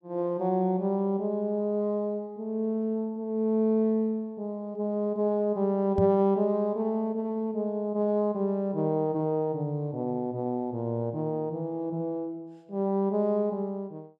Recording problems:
knock on the microphone; at 6 s; peak +3 dB vs average level

